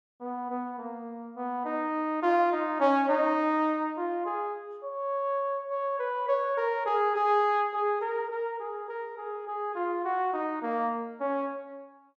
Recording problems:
none

